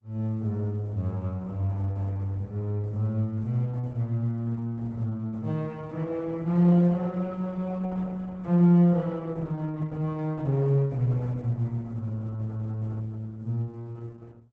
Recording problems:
codec artefacts; Opus, log-spectral distance 2 dB

